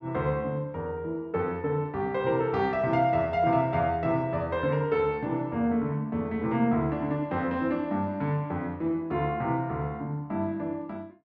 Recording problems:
none

